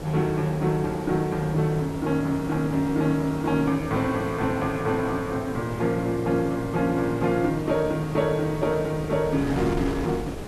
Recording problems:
background hiss; SNR 12 dB
wind noise; below 560 Hz, SNR 15 dB

